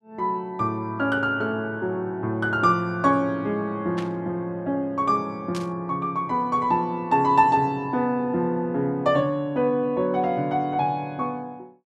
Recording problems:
burst of static; at 4 s and at 5.5 s; peak -9 dB vs average level

